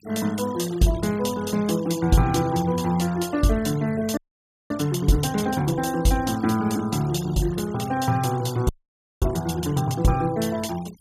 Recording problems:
denoising artefacts; signal-to-artefact ratio 19 dB
audio freezing; at 4 s for 0.5 s and at 8.5 s for 0.5 s

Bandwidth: 15.5 kHz